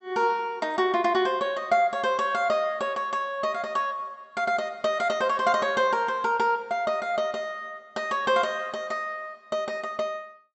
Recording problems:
low-pass filter; nothing above 7.8 kHz

